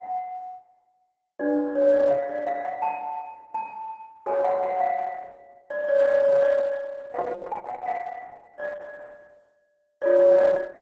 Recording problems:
lossy compression; Opus, log-spectral distance 3 dB

